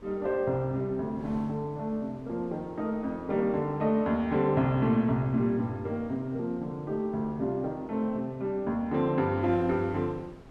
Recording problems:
wind on the microphone; below 560 Hz, SNR 23 dB

